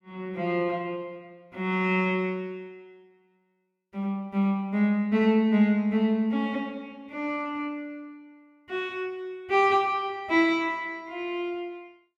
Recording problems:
none

